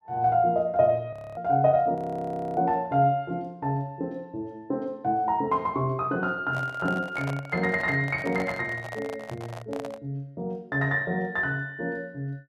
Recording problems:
frozen audio; at 1 s and at 2 s for 0.5 s
microphone handling noise; from 6.5 to 10 s; peak -5 dB vs average level

